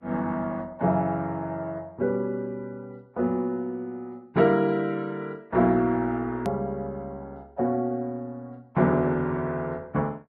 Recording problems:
lossy codec; Vorbis, log-spectral distance 2 dB, nothing above 13.1 kHz
click at an edit; at 6.5 s

